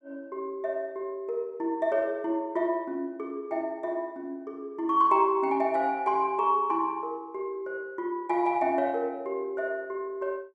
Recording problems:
none

